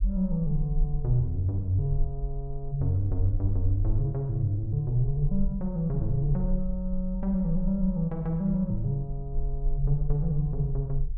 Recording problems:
rumble; below 42 Hz, strongest tone 20 Hz, SNR 7 dB

